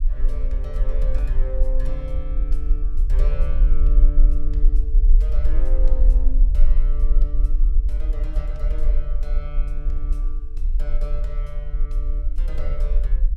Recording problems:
low-frequency rumble; below 42 Hz, SNR -14 dB

